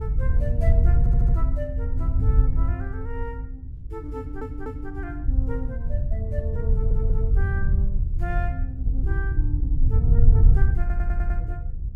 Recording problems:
wind on the microphone; below 80 Hz, SNR -12 dB
audio stuttering; 4 times, first at 1 s

